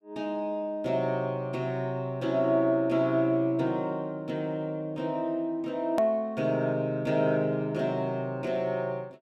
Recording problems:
click at an edit; at 6 s

